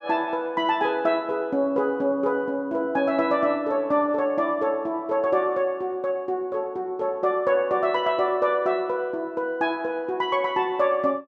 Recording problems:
none

